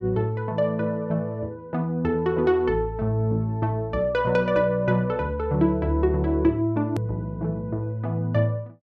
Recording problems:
hard cut with a click; at 7 s

